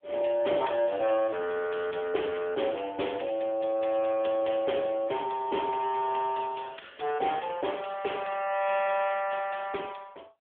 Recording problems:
phone line; 300 Hz to 3.4 kHz, AMR-NB

